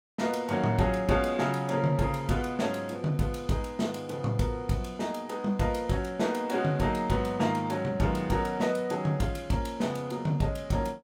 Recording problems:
none

